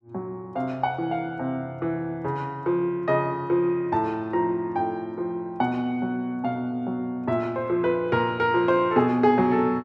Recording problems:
none

